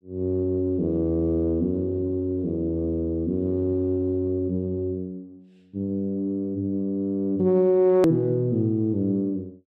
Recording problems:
click at an edit; at 8 s

